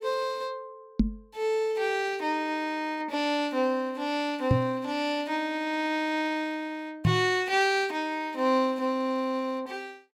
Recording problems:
knock on the microphone; at 1 s, at 4.5 s and at 7 s; peak +9 dB vs average level

